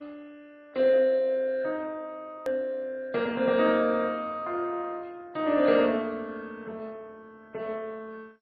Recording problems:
lossy compression; MP3, then MP2, log-spectral distance 2 dB
click at an edit; at 2.5 s

